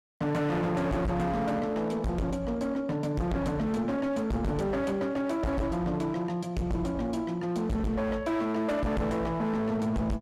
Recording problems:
distortion; hard clipping, signal-to-distortion ratio 6 dB

